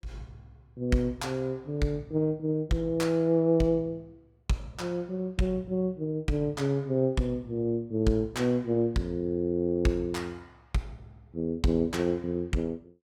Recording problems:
none

